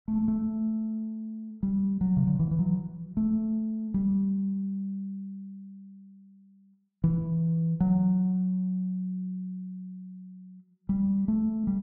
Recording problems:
none

